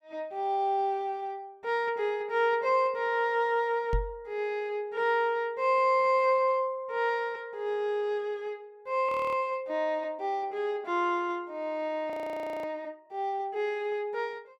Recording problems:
microphone thump; at 4 s; peak +3 dB vs average level
audio freezing; at 9 s and at 12 s for 0.5 s

